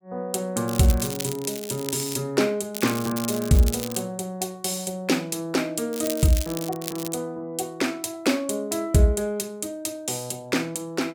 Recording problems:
crackle; from 0.5 to 2 s, from 2.5 to 4 s and from 6 to 7 s; loose cable, SNR 9 dB

